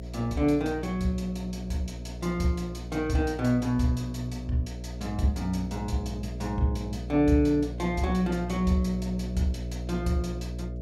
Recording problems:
mains hum; 60 Hz, harmonics up to 660 Hz, SNR 8 dB

